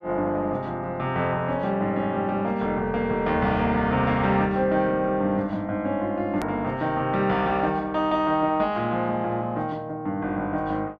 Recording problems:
hard cut with a click; at 6.5 s

